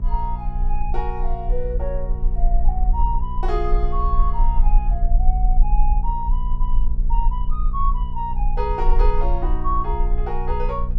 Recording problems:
mains hum; 60 Hz, harmonics up to 660 Hz, SNR 5 dB
rumble; below 38 Hz, strongest tone 24 Hz, SNR -5 dB

